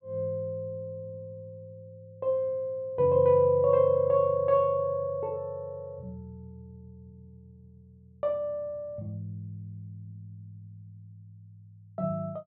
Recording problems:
none

